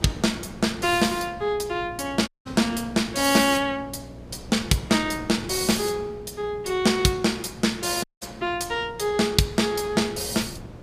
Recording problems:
electrical hum; 60 Hz, harmonics up to 660 Hz, SNR 22 dB
wind on the microphone; below 410 Hz, SNR 19 dB
dropout; at 2.5 s and at 8 s

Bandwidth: 15 kHz